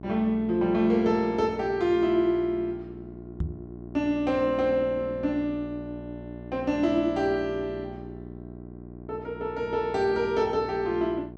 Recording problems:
hum; 60 Hz, harmonics up to 1.1 kHz, SNR 15 dB
microphone bump; at 3.5 s; peak 0 dB vs average level

